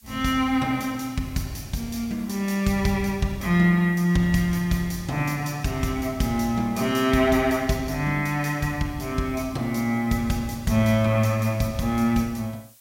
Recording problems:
background hiss; slope +4 dB per octave, SNR 27 dB

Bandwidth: 16 kHz